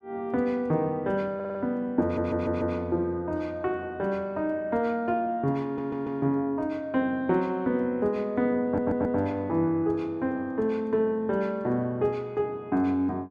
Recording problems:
audio stuttering; 4 times, first at 1.5 s

